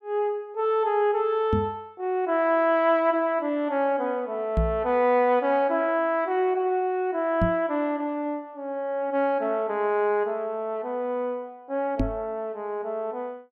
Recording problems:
knock on the microphone; 4 times, first at 1.5 s; peak +4 dB vs average level

